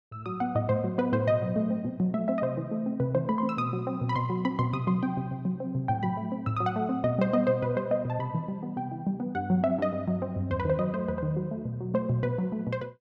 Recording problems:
none

